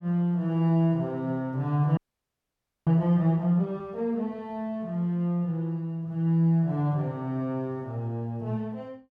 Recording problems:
frozen audio; at 2 s for 1 s

